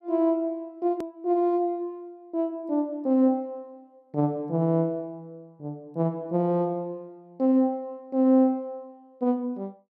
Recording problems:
click at an edit; at 1 s

